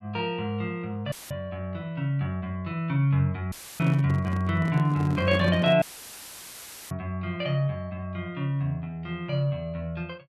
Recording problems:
dropout; at 1 s, at 3.5 s and at 6 s for 1 s; filled with static
handling noise; from 4 to 6 s; peak -4 dB vs average level

